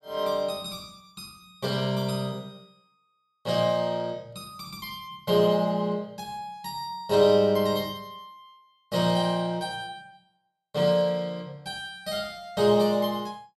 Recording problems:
none

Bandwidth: 14.5 kHz